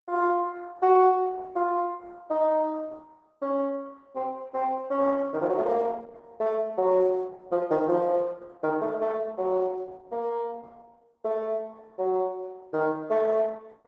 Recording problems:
lossy compression; Opus, log-spectral distance 2 dB

